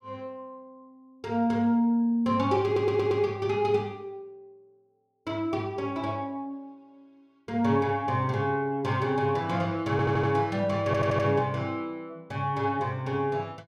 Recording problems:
audio stuttering; at 2.5 s, at 10 s and at 11 s

